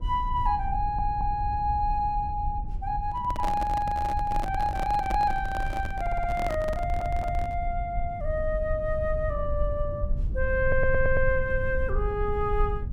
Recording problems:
low-frequency rumble; below 72 Hz, SNR 5 dB
audio stuttering; 4 times, first at 1 s
microphone handling noise; from 3 to 7.5 s; peak -2 dB vs average level

